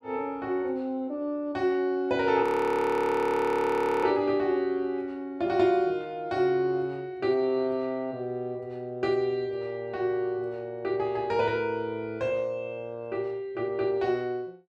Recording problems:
audio freezing; at 2.5 s for 1.5 s

